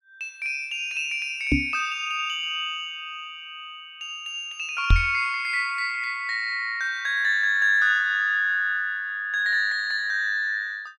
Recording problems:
microphone bump; at 1.5 s and at 5 s; peak +8 dB vs average level

